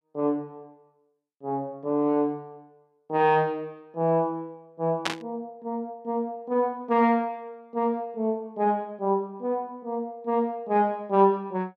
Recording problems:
static burst; at 5 s; peak +4 dB vs average level

